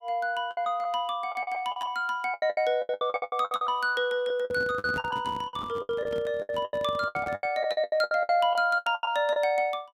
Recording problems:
lost packets; 20% of the sound replaced, filled with the last packet
microphone handling noise; from 4.5 to 7.5 s; peak -6 dB vs average level

